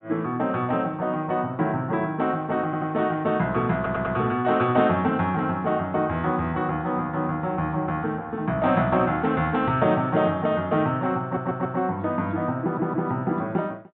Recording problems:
treble cut off; nothing above 4 kHz
audio stuttering; 4 times, first at 2.5 s

